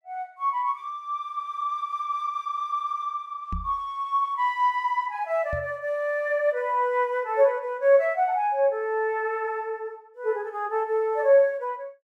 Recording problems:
microphone thump; at 3.5 s and at 5.5 s; peak -4 dB vs average level

